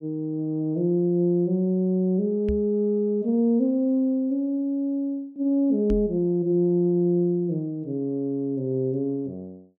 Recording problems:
microphone bump; at 2.5 s and at 6 s; peak -2 dB vs average level

